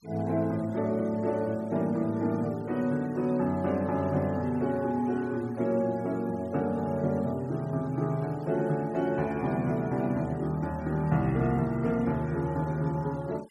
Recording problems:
noise reduction artefacts; signal-to-artefact ratio 26 dB

